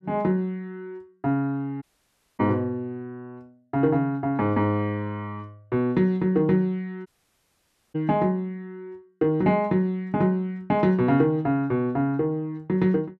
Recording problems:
audio cutting out; at 2 s for 0.5 s and at 7 s for 1 s

